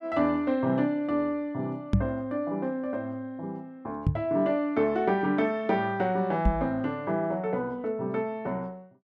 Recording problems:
microphone thump; at 2 s, at 4 s and at 6.5 s; peak +9 dB vs average level

